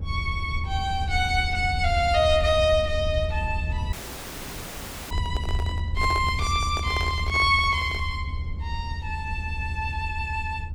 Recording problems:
rumble; below 82 Hz, SNR 5 dB
dropout; at 4 s for 1 s
microphone handling noise; from 5 to 8 s; peak -5 dB vs average level

